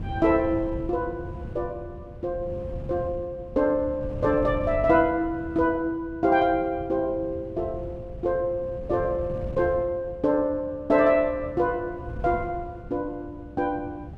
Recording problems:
wind on the microphone; below 160 Hz, SNR 13 dB

